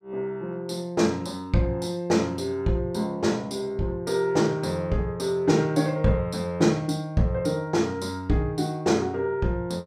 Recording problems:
none

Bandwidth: 15.5 kHz